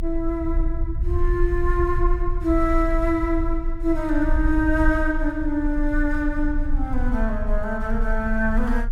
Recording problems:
low-frequency rumble; below 50 Hz, strongest tone 28 Hz, SNR 3 dB

